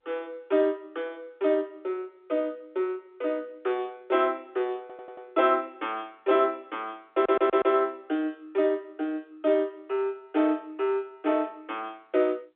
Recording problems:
phone line; 260 Hz to 3.6 kHz, G.711
stutter; at 5 s and at 7 s

